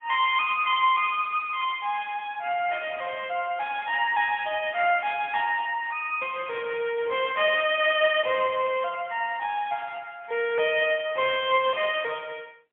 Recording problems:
phone line; 300 Hz to 3.3 kHz, AMR-NB, then MP3

